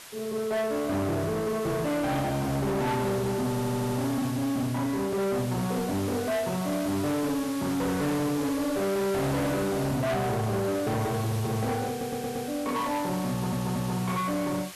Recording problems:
distortion; soft clipping, signal-to-distortion ratio 8 dB
hiss; slope 0 dB per octave, SNR 13 dB
audio stuttering; at 3.5 s, at 12 s and at 13 s

